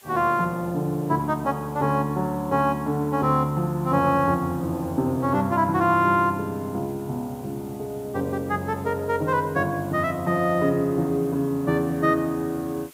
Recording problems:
hiss; slope -1 dB per octave, SNR 25 dB

